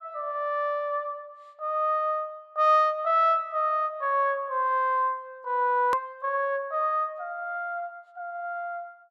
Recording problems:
edit click; at 6 s

